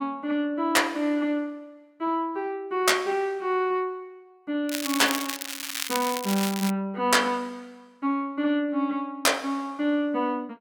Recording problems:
crackling; from 4.5 to 6.5 s; loose cable, SNR 5 dB

